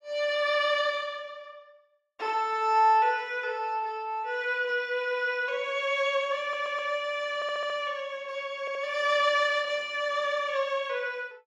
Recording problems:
audio stuttering; at 6.5 s, at 7.5 s and at 8.5 s

